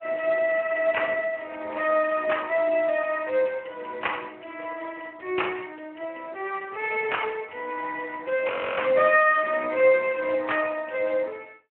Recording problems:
phone line; 320 Hz to 3 kHz, Speex
frozen audio; at 8.5 s

